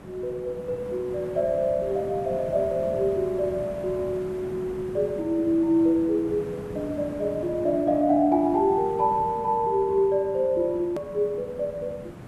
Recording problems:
background hiss; slope -8 dB per octave, SNR 14 dB
click at an edit; at 11 s

